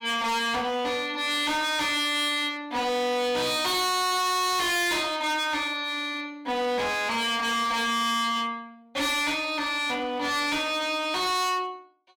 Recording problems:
distorted audio; hard clipping, signal-to-distortion ratio 6 dB

